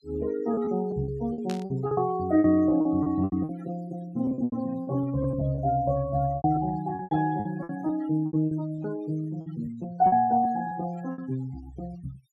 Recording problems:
denoising artefacts; signal-to-artefact ratio 21 dB
lost packets; 13% of the sound replaced, filled with repeated pitch periods
burst of static; at 1.5 s; peak -8 dB vs average level

